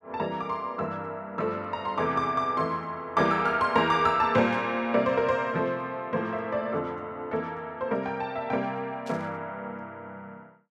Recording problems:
static burst; at 4.5 s and at 9 s; peak -14 dB vs average level

